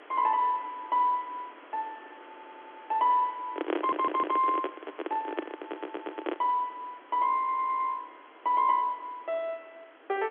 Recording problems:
telephone audio; 260 Hz to 3.6 kHz, G.711
background hiss; SNR 21 dB
audio stuttering; 4 times, first at 2.5 s
microphone handling noise; from 3.5 to 6.5 s; peak +3 dB vs average level

